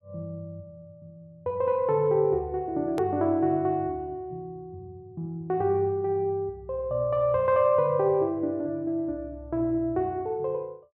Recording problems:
click at an edit; at 3 s

